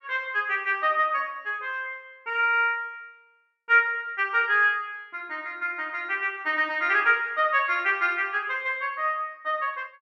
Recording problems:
none

